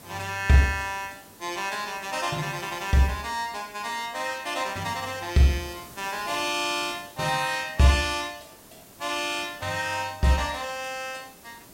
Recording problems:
background hiss; SNR 20 dB

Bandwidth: 16 kHz